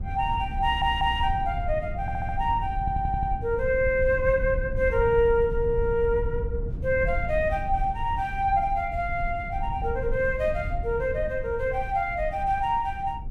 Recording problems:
rumble; below 90 Hz, SNR 8 dB
stutter; at 0.5 s, at 2 s and at 3 s

